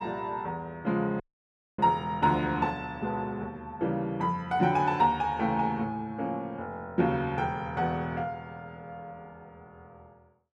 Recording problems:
audio cutting out; at 1 s for 0.5 s

